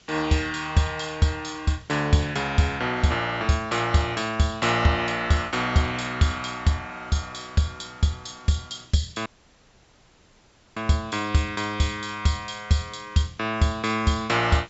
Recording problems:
treble missing; nothing above 7.6 kHz
hiss; SNR 28 dB
audio cutting out; at 9.5 s for 1.5 s

